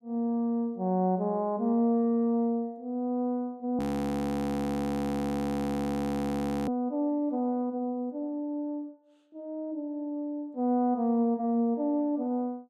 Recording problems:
audio freezing; at 4 s for 3 s

